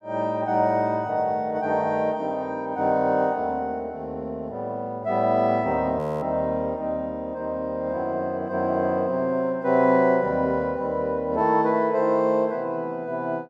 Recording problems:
audio freezing; at 6 s

